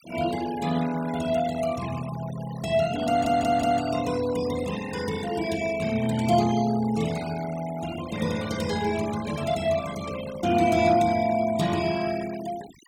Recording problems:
denoising artefacts; signal-to-artefact ratio 15 dB
stutter; at 3 s

